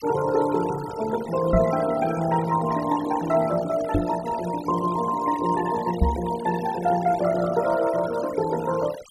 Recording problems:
denoising artefacts; signal-to-artefact ratio 14 dB
microphone thump; at 1.5 s, at 4 s and at 6 s; peak +7 dB vs average level

